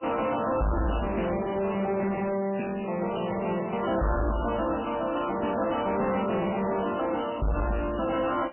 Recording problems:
lossy compression; MP3, log-spectral distance 8 dB, nothing above 2.9 kHz
distortion; soft clipping, signal-to-distortion ratio 7 dB

